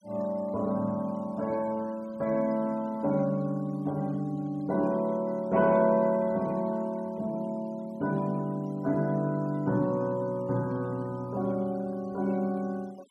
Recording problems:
denoising artefacts; signal-to-artefact ratio 26 dB

